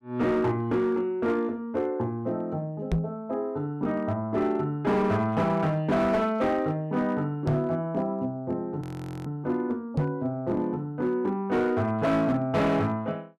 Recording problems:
distortion; hard clipping, signal-to-distortion ratio 12 dB
knock on the microphone; at 3 s, at 7.5 s and at 10 s; peak +6 dB vs average level
frozen audio; at 9 s

